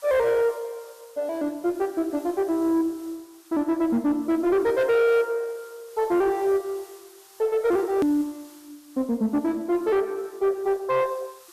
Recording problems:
lossy compression; MP2, log-spectral distance 2 dB, nothing above 14.1 kHz
distortion; soft clipping, signal-to-distortion ratio 12 dB
background hiss; SNR 26 dB
edit click; at 8 s

